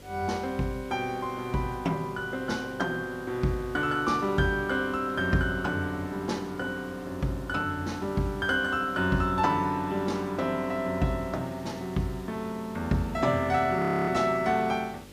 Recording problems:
mains hum; 50 Hz, harmonics up to 600 Hz, SNR 23 dB
background hiss; slope -2 dB per octave, SNR 23 dB
frozen audio; at 14 s

